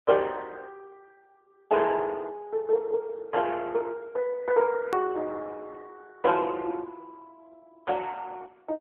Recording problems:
telephone audio; 320 Hz to 3.3 kHz, AMR-NB
edit click; at 5 s

